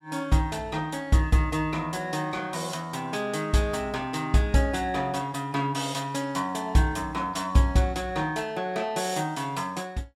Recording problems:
none

